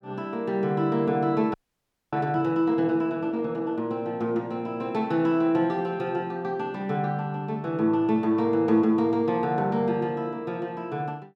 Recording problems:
frozen audio; at 1.5 s for 0.5 s

